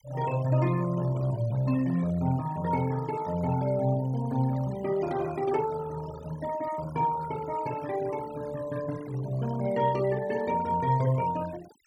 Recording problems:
noise reduction artefacts; signal-to-artefact ratio 18 dB

